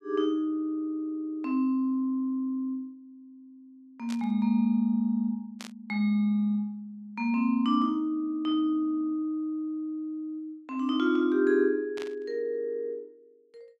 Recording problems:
burst of static; at 4 s, at 5.5 s and at 12 s; peak -9 dB vs average level

